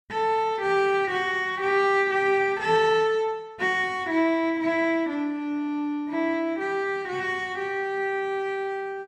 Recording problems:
none

